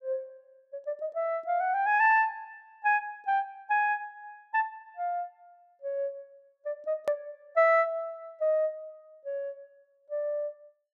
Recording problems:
edit click; at 7 s

